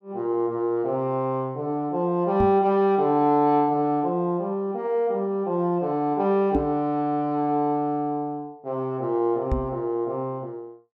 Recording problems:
microphone thump; at 2.5 s, at 6.5 s and at 9.5 s; peak +3 dB vs average level

